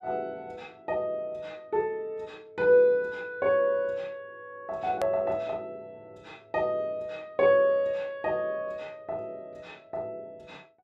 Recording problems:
click at an edit; at 5 s

